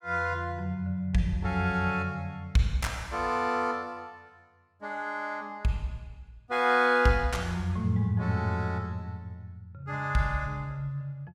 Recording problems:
none

